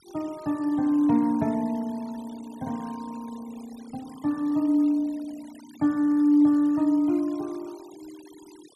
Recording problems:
denoising artefacts; signal-to-artefact ratio 26 dB

